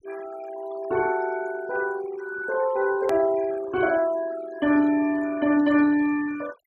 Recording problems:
denoising artefacts; signal-to-artefact ratio 19 dB
click at an edit; at 3 s

